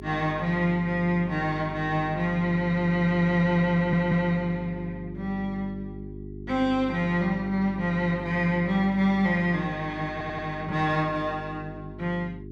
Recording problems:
electrical hum; 50 Hz, harmonics up to 400 Hz, SNR 13 dB
stutter; at 3.5 s and at 10 s

